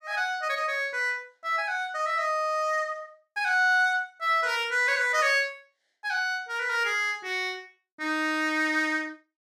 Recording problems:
none

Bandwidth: 14.5 kHz